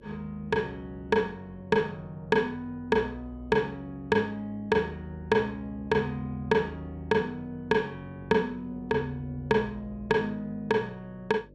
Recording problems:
mains hum; 50 Hz, harmonics up to 600 Hz, SNR 23 dB

